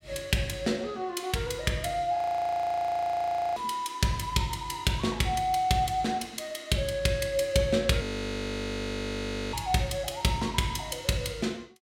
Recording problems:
audio freezing; at 2 s for 1.5 s and at 8 s for 1.5 s

